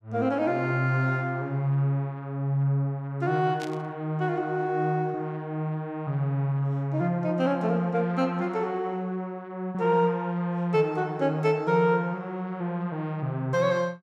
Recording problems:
static burst; at 3.5 s; peak -9 dB vs average level

